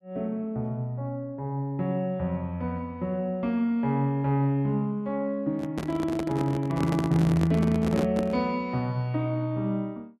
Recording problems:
handling noise; from 5.5 to 8.5 s; peak +2 dB vs average level

